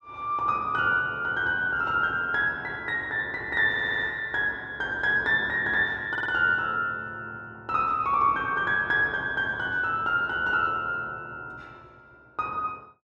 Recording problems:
audio stuttering; at 3.5 s and at 6 s

